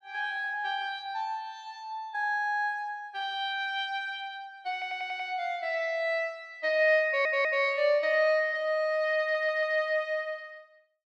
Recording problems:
audio stuttering; at 4.5 s, at 7 s and at 9 s

